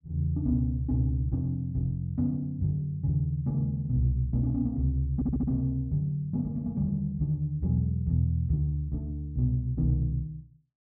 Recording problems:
stutter; at 5 s

